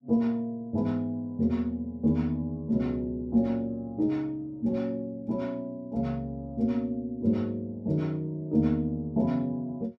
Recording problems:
none

